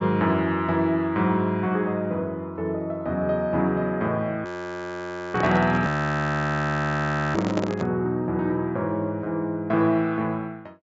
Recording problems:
treble cut off; nothing above 8 kHz
frozen audio; at 4.5 s for 1 s and at 6 s for 1.5 s
microphone handling noise; from 5.5 to 8 s; peak +1 dB vs average level

